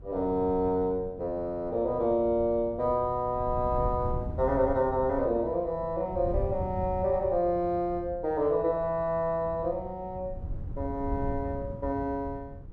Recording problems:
wind on the microphone; below 120 Hz, SNR 11 dB

